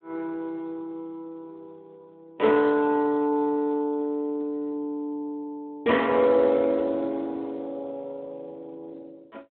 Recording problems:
telephone audio; 240 Hz to 3.6 kHz, Speex

